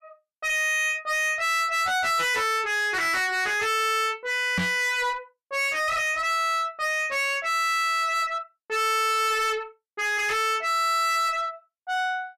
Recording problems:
distortion; soft clipping, signal-to-distortion ratio 6 dB
microphone bump; at 4.5 s; peak +2 dB vs average level

